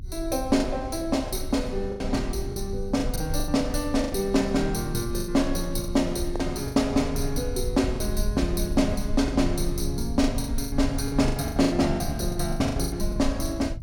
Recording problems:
rumble; below 72 Hz, strongest tone 24 Hz, SNR 8 dB
packet loss; 12% of the sound replaced, filled with the last packet

